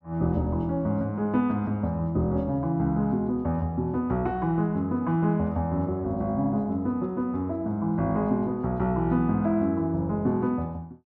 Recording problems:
none

